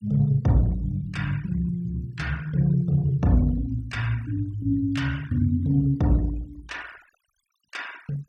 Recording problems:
denoising artefacts; signal-to-artefact ratio 25 dB

